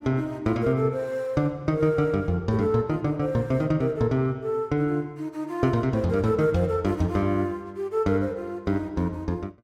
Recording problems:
none

